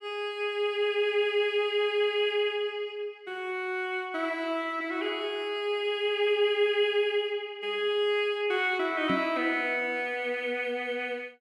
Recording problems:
microphone bump; at 9 s; peak +1 dB vs average level

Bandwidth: 15 kHz